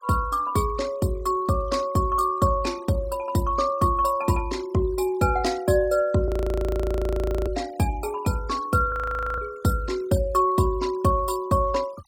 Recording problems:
denoising artefacts; signal-to-artefact ratio 23 dB
frozen audio; at 6.5 s for 1 s and at 9 s

